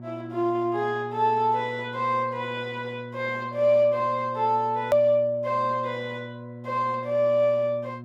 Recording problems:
hum; 60 Hz, harmonics up to 960 Hz, SNR 15 dB
edit click; at 5 s

